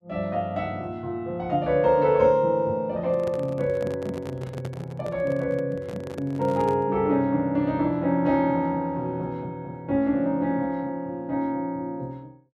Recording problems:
handling noise; from 3 to 7 s; peak -6 dB vs average level

